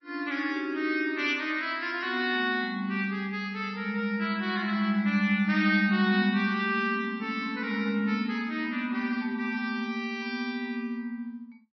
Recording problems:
lossy codec; MP3, log-spectral distance 2 dB, nothing above 5.5 kHz

